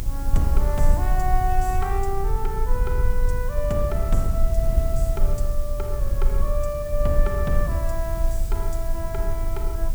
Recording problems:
hiss; slope 0 dB per octave, SNR 13 dB
low-frequency rumble; below 54 Hz, strongest tone 24 Hz, SNR -3 dB

